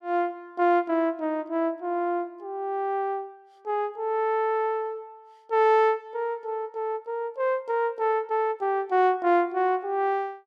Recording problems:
none

